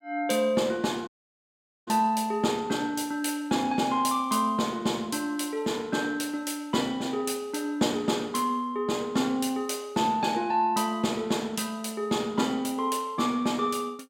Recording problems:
audio cutting out; at 1 s for 1 s

